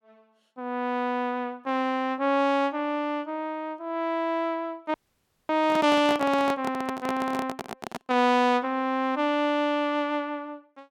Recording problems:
audio freezing; at 5 s for 0.5 s
microphone handling noise; from 5.5 to 8 s; peak -2 dB vs average level

